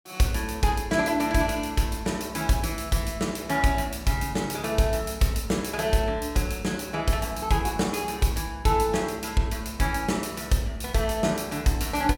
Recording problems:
none

